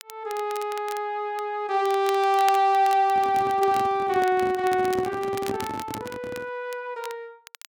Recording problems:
crackle; vinyl, SNR 18 dB
microphone handling noise; from 3 to 6.5 s; peak -4 dB vs average level

